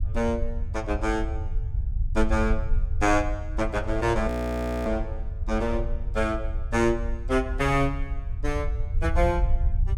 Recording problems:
rumble; below 64 Hz, SNR 3 dB
frozen audio; at 4.5 s for 0.5 s

